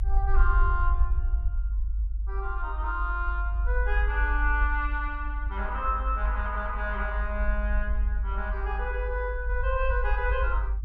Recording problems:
rumble; below 52 Hz, strongest tone 50 Hz, SNR -2 dB

